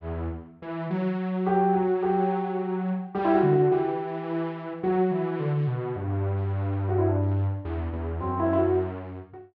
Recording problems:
none

